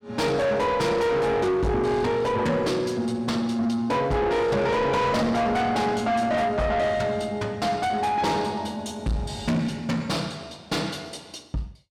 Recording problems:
distortion; soft clipping, signal-to-distortion ratio 7 dB

